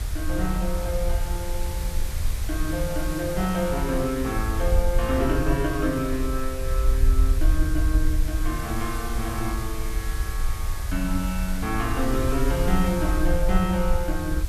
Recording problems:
hiss; slope -2 dB per octave, SNR 10 dB
low-frequency rumble; below 60 Hz, SNR 1 dB

